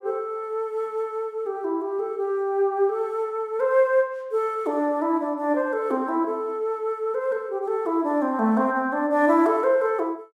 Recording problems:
none

